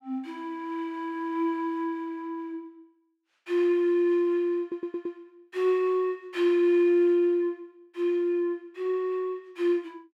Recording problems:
audio stuttering; at 4.5 s

